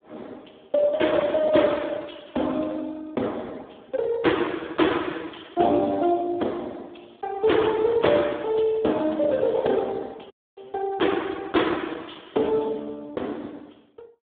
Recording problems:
phone line; 190 Hz to 3.6 kHz, Speex
dropout; at 10 s

